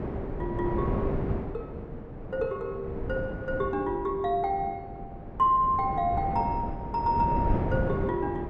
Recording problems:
wind noise; below 370 Hz, SNR 5 dB

